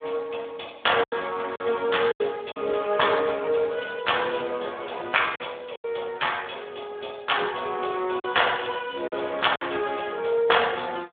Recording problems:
phone line; 300 Hz to 3.6 kHz, Speex
packet loss; 4% of the sound replaced, filled with silence

